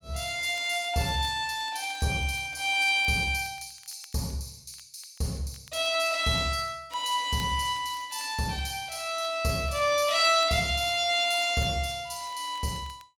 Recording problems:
crackling; vinyl, SNR 29 dB

